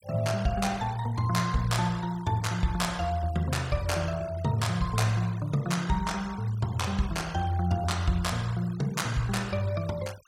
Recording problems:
noise reduction artefacts; signal-to-artefact ratio 19 dB

